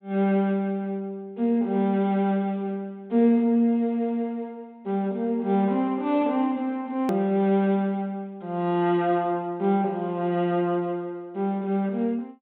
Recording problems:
treble cut off; nothing above 4 kHz
edit click; at 7 s

